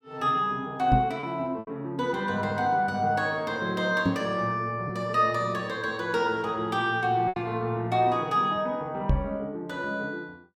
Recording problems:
packet loss; 2% of the sound replaced, filled with repeated pitch periods
microphone thump; at 1 s, at 4 s and at 9 s; peak +7 dB vs average level

